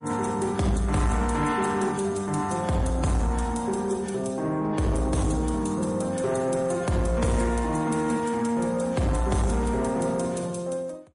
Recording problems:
lossy codec; MP3, then MP3, log-spectral distance 3 dB, nothing above 10.4 kHz
distorted audio; soft clipping, signal-to-distortion ratio 11 dB

